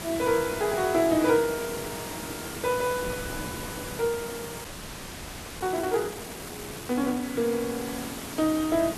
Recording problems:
background hiss; slope -3 dB per octave, SNR 9 dB
wind noise; below 470 Hz, SNR 20 dB
frozen audio; at 4.5 s for 1 s

